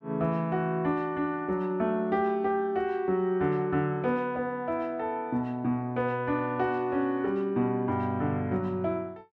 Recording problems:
none

